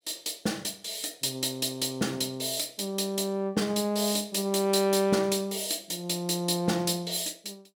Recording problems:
none

